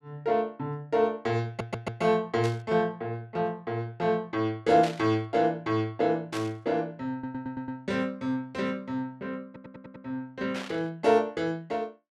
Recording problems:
audio stuttering; at 1.5 s, at 7 s and at 9.5 s
burst of static; 4 times, first at 2.5 s; peak -5 dB vs average level

